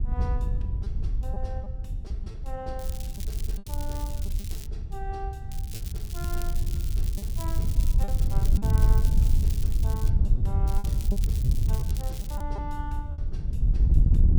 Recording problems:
wind noise; below 76 Hz, SNR -13 dB
lost packets; 5% of the sound replaced, filled with repeated pitch periods
crackle; from 3 to 4.5 s, from 5.5 to 10 s and from 11 to 12 s; loose cable, SNR 2 dB

